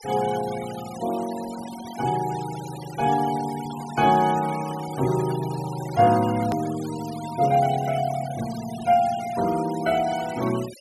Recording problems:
denoising artefacts; signal-to-artefact ratio 16 dB
hard cut with a click; at 6.5 s

